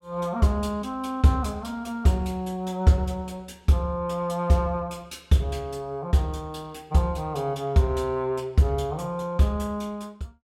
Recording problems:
none

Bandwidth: 16 kHz